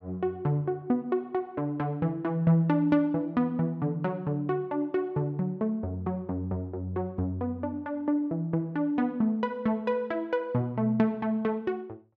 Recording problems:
none

